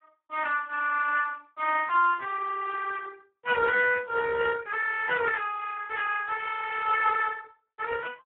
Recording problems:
phone line; 320 Hz to 3 kHz, Speex

